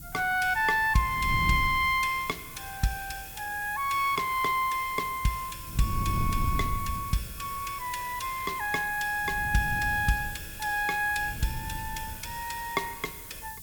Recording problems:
background hiss; slope +5 dB per octave, SNR 13 dB
wind on the microphone; below 140 Hz, SNR 9 dB

